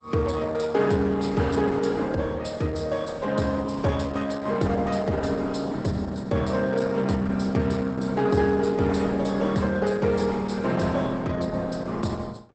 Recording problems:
lossy compression; Opus, log-spectral distance 4 dB, nothing above 8.2 kHz

